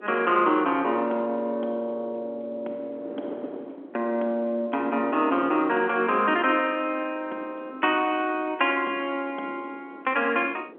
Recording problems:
telephone audio; 260 Hz to 3.7 kHz, G.711
wind on the microphone; below 530 Hz, SNR 19 dB

